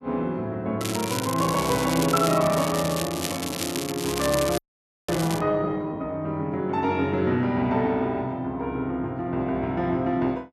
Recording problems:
crackling; from 1 to 5.5 s; loose cable, SNR 7 dB
audio freezing; at 4.5 s for 0.5 s

